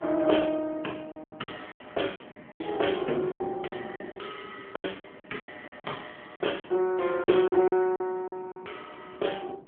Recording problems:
phone line; 240 Hz to 3.4 kHz, AMR-NB
wind noise; below 470 Hz, SNR 20 dB
lost packets; 13% of the sound replaced, filled with silence

